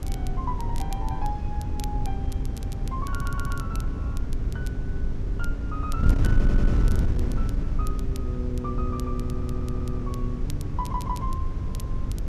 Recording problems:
wind on the microphone; below 96 Hz, SNR -7 dB
crackling; vinyl, SNR 12 dB
stutter; 4 times, first at 3 s

